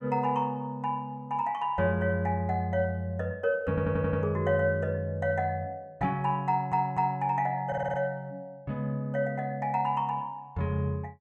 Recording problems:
audio stuttering; at 3.5 s, at 6.5 s and at 7.5 s

